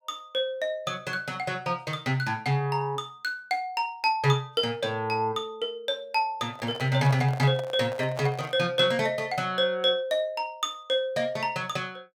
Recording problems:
microphone handling noise; from 6.5 to 8.5 s; peak -4 dB vs average level

